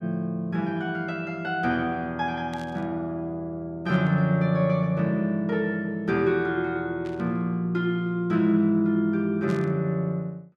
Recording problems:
burst of static; 4 times, first at 2.5 s; peak -14 dB vs average level

